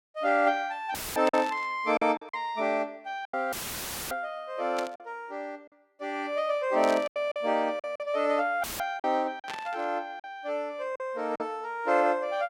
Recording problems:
lost packets; 6% of the sound replaced, filled with silence
dropout; at 1 s, at 3.5 s for 0.5 s and at 8.5 s; filled with static
burst of static; 4 times, first at 1.5 s; peak -5 dB vs average level

